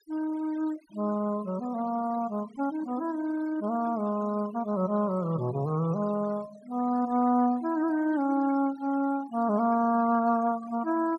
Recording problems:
noise reduction artefacts; signal-to-artefact ratio 20 dB

